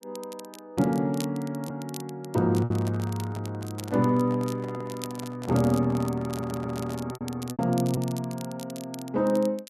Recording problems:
crackling; vinyl, SNR 17 dB
packet loss; 3% of the sound replaced, filled with repeated pitch periods
handling noise; from 2.5 to 7 s; peak -11 dB vs average level
audio stuttering; at 6.5 s

